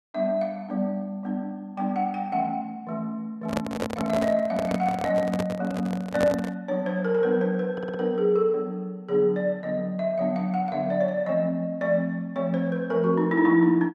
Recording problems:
handling noise; from 3.5 to 6.5 s; peak +2 dB vs average level
stutter; at 7.5 s

